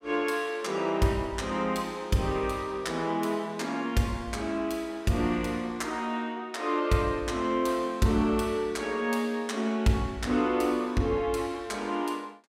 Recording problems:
none

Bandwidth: 16 kHz